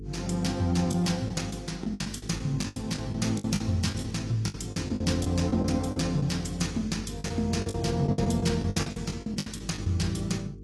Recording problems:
lossy codec; AAC, log-spectral distance 4 dB, nothing above 11.6 kHz
electrical hum; 50 Hz, harmonics up to 450 Hz, SNR 13 dB
lost packets; 13% of the sound replaced, filled with the last packet

